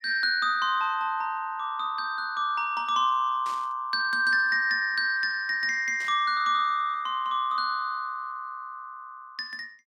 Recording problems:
burst of static; at 3.5 s and at 6 s; peak -14 dB vs average level

